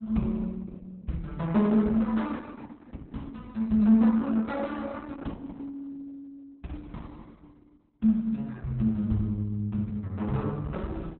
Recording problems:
lossy compression; Opus, log-spectral distance 2 dB, nothing above 4 kHz

